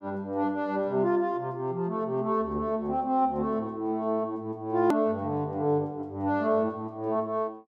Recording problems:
click at an edit; at 5 s

